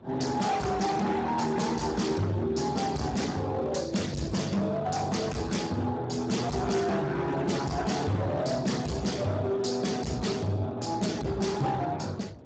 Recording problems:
lossy codec; Speex, log-spectral distance 5 dB, nothing above 7.6 kHz
distorted audio; hard clipping, signal-to-distortion ratio 6 dB
wind on the microphone; below 570 Hz, SNR 18 dB

